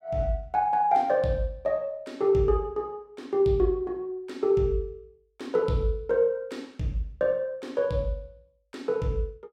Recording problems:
none

